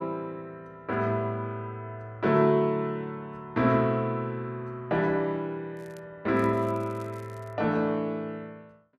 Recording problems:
crackle; at 6 s and from 6.5 to 7.5 s; loose cable, SNR 30 dB

